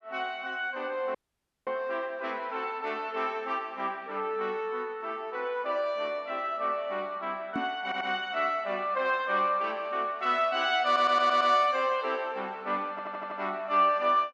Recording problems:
dropout; at 1 s for 0.5 s
microphone bump; at 7.5 s; peak -1 dB vs average level
stutter; at 8 s, at 11 s and at 13 s

